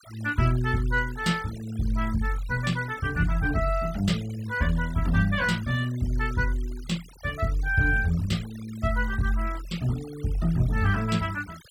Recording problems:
noise reduction artefacts; signal-to-artefact ratio 19 dB

